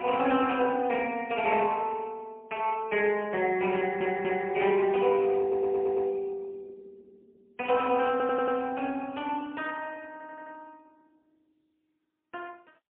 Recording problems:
phone line; 220 Hz to 2.9 kHz, AMR-NB, then MP3
stutter; 4 times, first at 4 s

